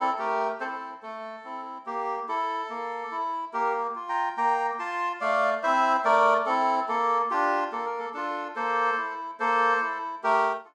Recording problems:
none

